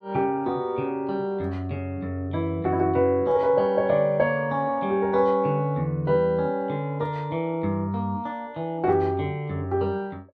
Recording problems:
none

